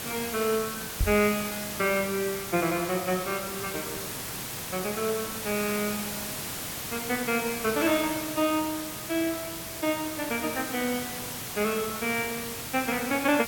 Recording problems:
background hiss; slope -2 dB per octave, SNR 5 dB
knock on the microphone; at 1 s; peak +4 dB vs average level

